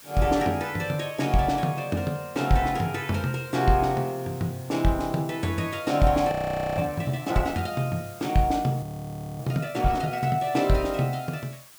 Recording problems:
background hiss; slope +1 dB per octave, SNR 20 dB
frozen audio; at 6.5 s and at 9 s for 0.5 s

